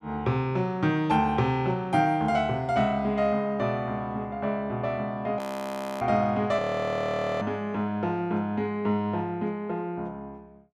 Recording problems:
frozen audio; at 5.5 s for 0.5 s and at 6.5 s for 1 s

